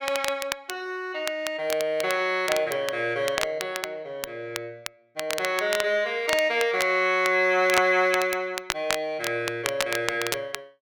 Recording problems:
crackling; vinyl, SNR 8 dB

